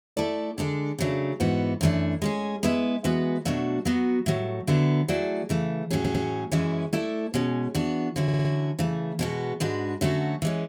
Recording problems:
audio stuttering; at 6 s and at 8 s

